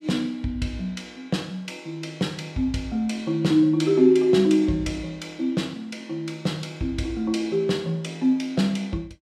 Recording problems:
none

